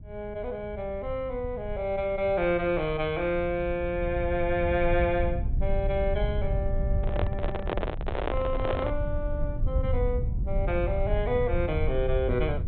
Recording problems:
treble missing; nothing above 4 kHz
low-frequency rumble; below 86 Hz, SNR 3 dB
handling noise; from 7 to 9 s; peak +3 dB vs average level

